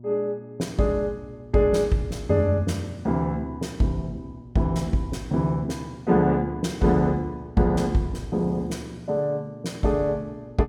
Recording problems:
mains hum; 60 Hz, harmonics up to 600 Hz, SNR 20 dB

